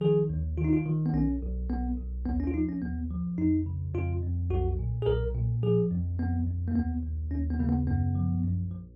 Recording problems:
hum; 60 Hz, harmonics up to 540 Hz, SNR 24 dB

